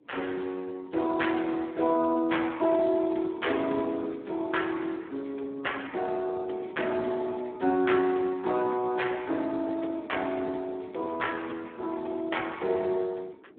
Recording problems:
telephone audio; 240 Hz to 3.5 kHz, Speex
wind noise; below 400 Hz, SNR 20 dB

